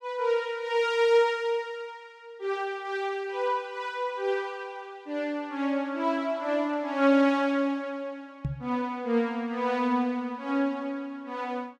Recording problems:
microphone thump; at 8.5 s; peak +1 dB vs average level

